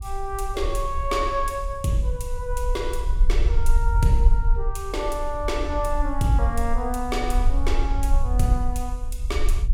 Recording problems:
rumble; below 48 Hz, strongest tone 24 Hz, SNR 0 dB

